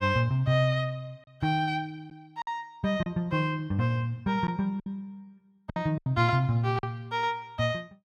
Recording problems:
packet loss; 5% of the sound replaced, filled with silence

